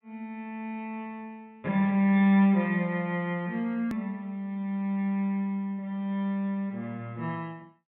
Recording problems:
low-pass filter; nothing above 4 kHz
click at an edit; at 4 s

